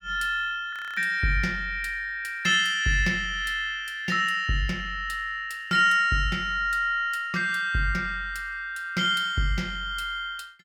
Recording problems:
audio freezing; at 0.5 s

